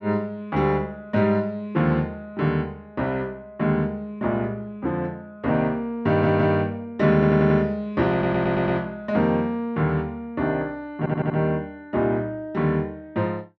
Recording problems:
stutter; 4 times, first at 6 s

